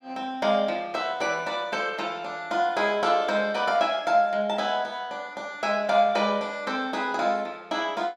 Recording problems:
none

